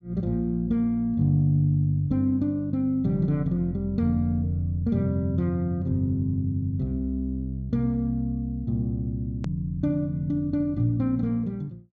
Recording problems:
low-pass filter; nothing above 8 kHz
click at an edit; at 9.5 s

